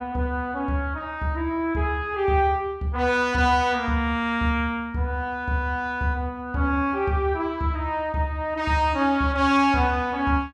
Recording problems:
none

